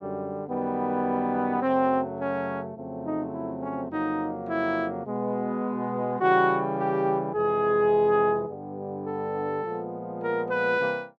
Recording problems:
none

